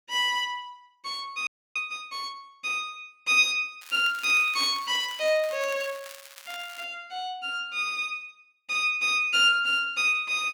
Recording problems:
frozen audio; at 1.5 s
crackle; from 4 to 7 s; loose cable, SNR 19 dB

